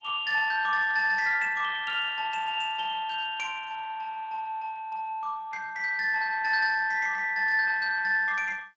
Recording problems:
codec artefacts; G.722, then Speex, log-spectral distance 3 dB, nothing above 7.1 kHz

